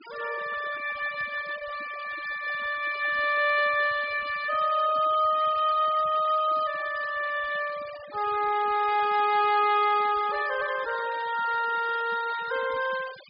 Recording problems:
treble missing; nothing above 5 kHz
noise reduction artefacts; signal-to-artefact ratio 17 dB

